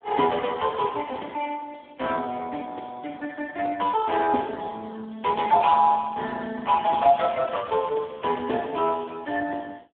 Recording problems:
phone line; 220 Hz to 2.1 kHz, Speex

